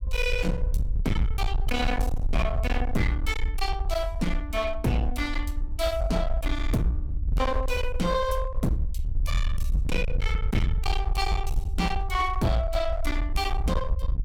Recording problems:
distorted audio; hard clipping, uneven, signal-to-distortion ratio 7 dB
low-frequency rumble; below 64 Hz, SNR 1 dB

